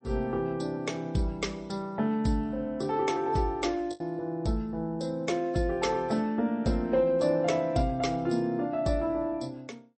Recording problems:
codec artefacts; MP3, log-spectral distance 2 dB, nothing above 8.2 kHz
lost packets; 0.8% of the sound replaced, filled with the last packet

